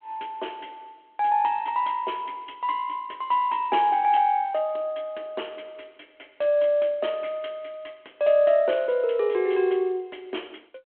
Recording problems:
phone line; 260 Hz to 3.3 kHz, G.726

